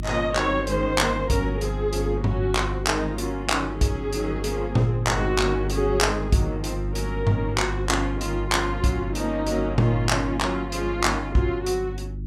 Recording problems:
electrical hum; 50 Hz, harmonics up to 350 Hz, SNR 7 dB

